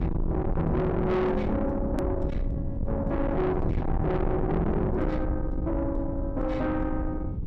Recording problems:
distortion; soft clipping, signal-to-distortion ratio 6 dB
hum; 60 Hz, harmonics up to 480 Hz, SNR 17 dB
rumble; below 250 Hz, SNR 3 dB
click at an edit; at 2 s

